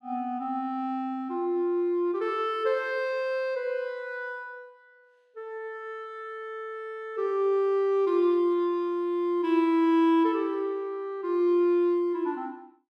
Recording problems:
none

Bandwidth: 13 kHz